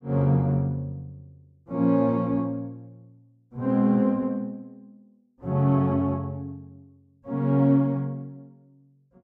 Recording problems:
none

